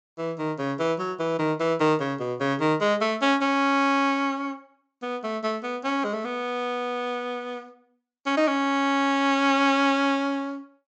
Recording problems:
treble cut off; nothing above 8 kHz

